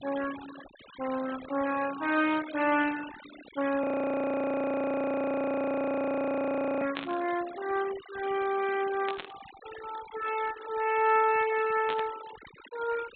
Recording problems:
treble missing; nothing above 4 kHz
noise reduction artefacts; signal-to-artefact ratio 14 dB
audio freezing; at 4 s for 3 s
static burst; at 7 s, at 9 s and at 12 s; peak -3 dB vs average level

